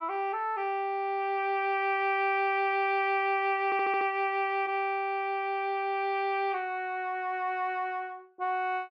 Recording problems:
stutter; at 3.5 s

